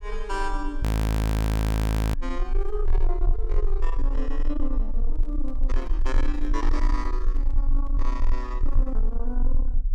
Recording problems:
distorted audio; soft clipping, signal-to-distortion ratio 10 dB
rumble; below 40 Hz, strongest tone 22 Hz, SNR -7 dB
frozen audio; at 1 s for 1.5 s
handling noise; from 5 to 8 s; peak -7 dB vs average level

